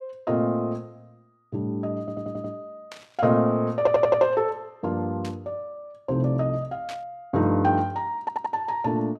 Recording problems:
stutter; at 2 s, at 4 s and at 8 s
static burst; at 3 s, at 5 s and at 7 s; peak -10 dB vs average level

